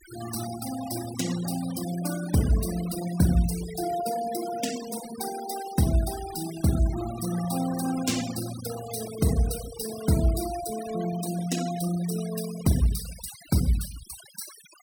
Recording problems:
denoising artefacts; signal-to-artefact ratio 12 dB

